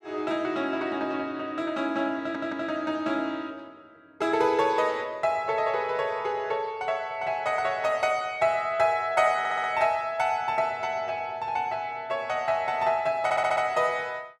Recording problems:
stutter; at 2 s, at 9.5 s and at 13 s

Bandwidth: 14 kHz